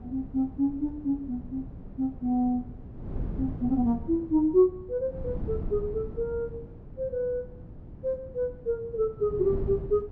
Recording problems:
wind on the microphone; below 190 Hz, SNR 11 dB

